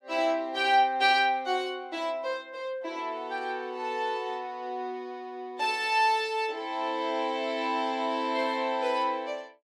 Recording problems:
none

